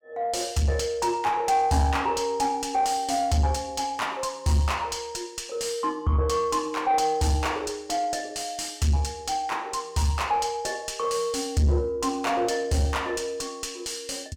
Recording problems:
distortion; soft clipping, signal-to-distortion ratio 10 dB

